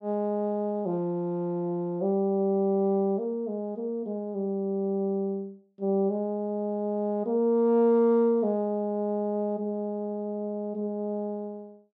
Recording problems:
none

